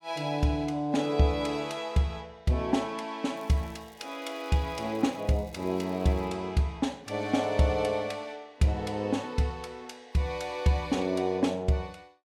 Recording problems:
crackle; from 3.5 to 6.5 s; loose cable, SNR 28 dB

